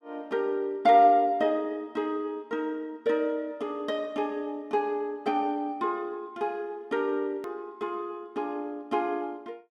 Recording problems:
click at an edit; at 7.5 s

